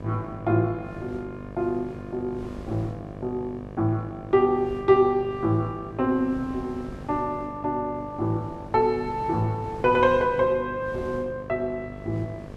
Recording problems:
hum; 50 Hz, harmonics up to 1.8 kHz, SNR 15 dB
wind on the microphone; below 380 Hz, SNR 19 dB

